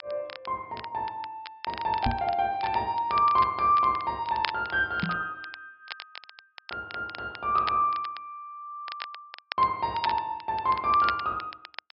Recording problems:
treble cut off; nothing above 5.5 kHz
crackling; vinyl, SNR 15 dB
microphone bump; at 2 s and at 5 s; peak +1 dB vs average level

